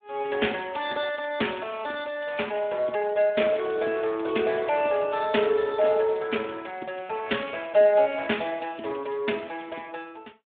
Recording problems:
telephone audio; 260 Hz to 3.6 kHz, Speex

